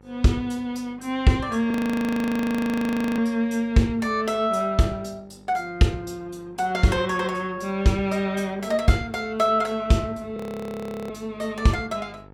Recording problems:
hum; 50 Hz, harmonics up to 1.9 kHz, SNR 26 dB
audio freezing; at 1.5 s for 1.5 s and at 10 s for 0.5 s

